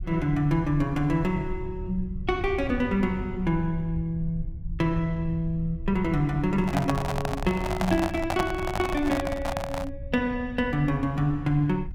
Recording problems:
low-frequency rumble; below 84 Hz, SNR 11 dB
microphone handling noise; from 6.5 to 10 s; peak +3 dB vs average level

